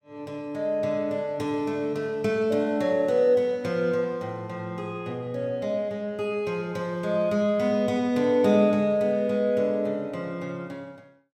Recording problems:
none

